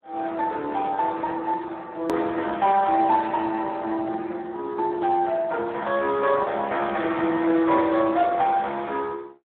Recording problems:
telephone audio; 240 Hz to 3.6 kHz, Speex
click at an edit; at 2 s

